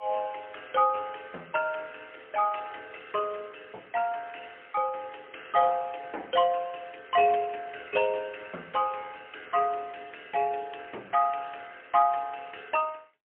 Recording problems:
telephone audio; 300 Hz to 3.1 kHz, AMR-NB, then MP3

